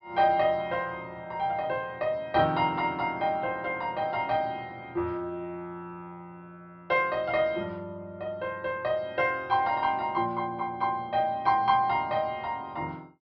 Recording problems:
treble cut off; nothing above 5.5 kHz

